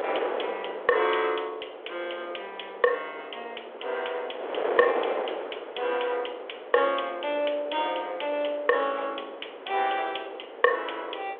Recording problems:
telephone audio; 340 Hz to 3.5 kHz, G.726
wind noise; below 850 Hz, SNR 8 dB

